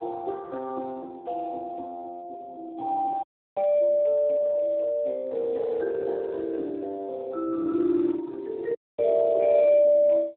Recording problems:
phone line; 280 Hz to 2.3 kHz, Speex
dropout; at 3 s and at 9 s

